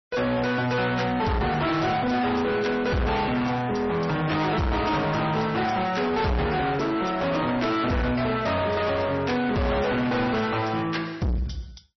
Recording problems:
lossy compression; MP3, log-spectral distance 4 dB, nothing above 5.8 kHz
distortion; soft clipping, signal-to-distortion ratio 6 dB

